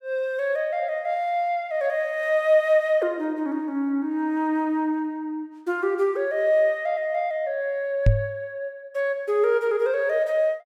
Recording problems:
microphone thump; at 8 s; peak +9 dB vs average level

